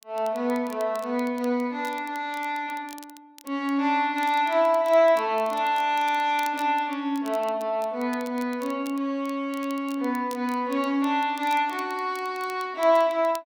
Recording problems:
crackling; vinyl, SNR 23 dB

